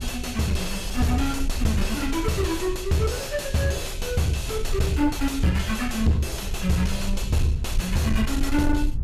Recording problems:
distortion; soft clipping, signal-to-distortion ratio 7 dB
rumble; below 64 Hz, strongest tone 22 Hz, SNR 6 dB

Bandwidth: 15.5 kHz